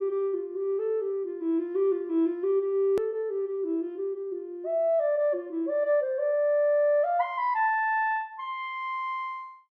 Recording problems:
click at an edit; at 3 s

